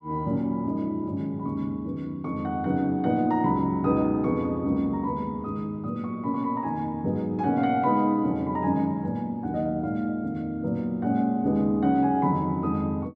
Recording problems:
none

